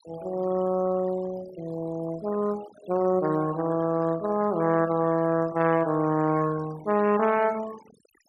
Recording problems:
noise reduction artefacts; signal-to-artefact ratio 19 dB

